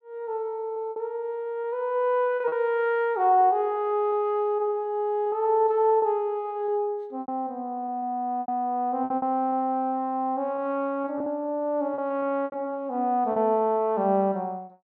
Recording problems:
packet loss; 6% of the sound replaced, filled with repeated pitch periods

